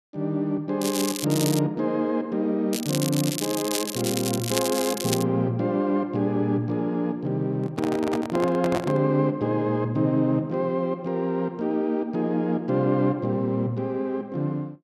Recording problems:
crackle; at 1 s and from 2.5 to 5 s; loose cable, SNR 5 dB
handling noise; from 7.5 to 9 s; peak -1 dB vs average level

